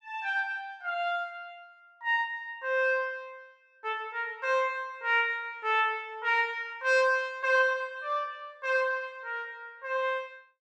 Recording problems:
none

